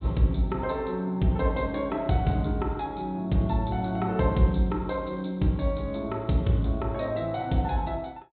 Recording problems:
treble cut off; nothing above 4 kHz

